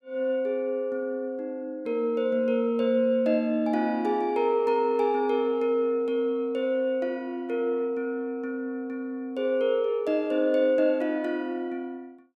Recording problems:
none

